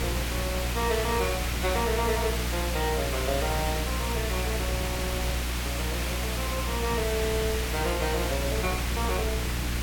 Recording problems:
hum; 60 Hz, harmonics up to 360 Hz, SNR 1 dB
hiss; slope -2 dB per octave, SNR 0 dB
wind on the microphone; below 230 Hz, SNR 11 dB

